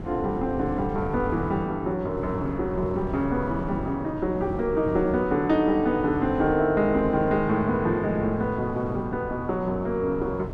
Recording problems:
wind noise; below 320 Hz, SNR 11 dB

